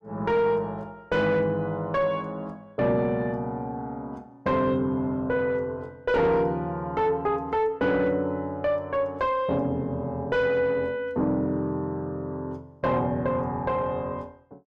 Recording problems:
distorted audio; soft clipping, signal-to-distortion ratio 10 dB

